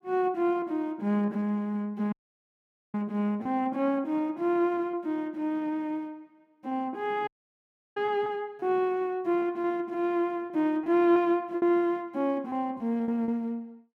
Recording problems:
packet loss; 5% of the sound replaced, filled with repeated pitch periods
dropout; at 2 s for 1 s and at 7.5 s for 0.5 s

